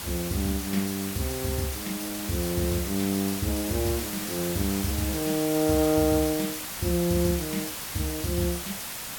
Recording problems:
background hiss; slope 0 dB per octave, SNR 5 dB

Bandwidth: 17.5 kHz